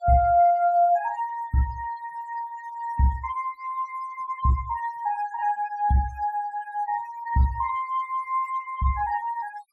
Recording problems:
denoising artefacts; signal-to-artefact ratio 22 dB

